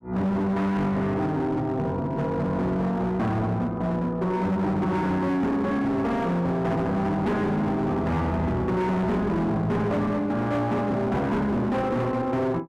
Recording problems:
distorted audio; hard clipping, signal-to-distortion ratio 8 dB

